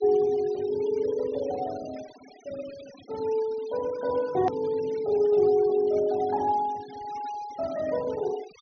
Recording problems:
low-pass filter; nothing above 6.2 kHz
denoising artefacts; signal-to-artefact ratio 22 dB
edit click; at 4.5 s

